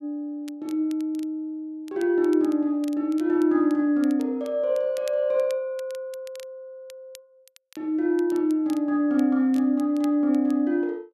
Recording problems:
crackling; vinyl, SNR 27 dB

